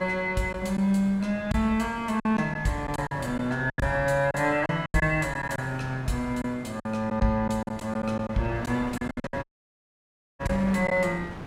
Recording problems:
wind noise; below 900 Hz, SNR 15 dB
lost packets; 9% of the sound replaced, filled with silence
dropout; at 9.5 s for 1 s

